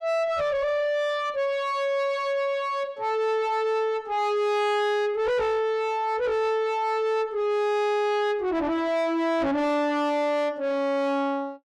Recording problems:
distortion; soft clipping, signal-to-distortion ratio 7 dB

